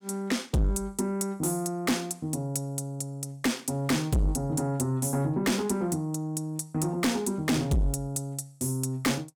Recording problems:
distorted audio; soft clipping, signal-to-distortion ratio 6 dB

